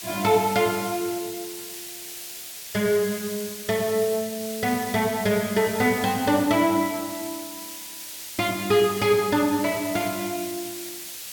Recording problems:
hiss; SNR 10 dB

